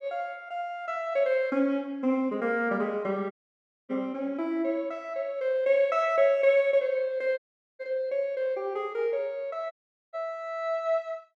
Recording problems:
dropout; at 3.5 s for 0.5 s, at 7.5 s and at 9.5 s

